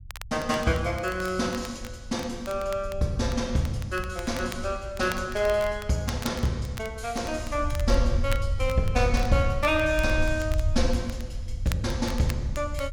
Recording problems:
rumble; below 80 Hz, SNR 5 dB
crackling; vinyl, SNR 17 dB

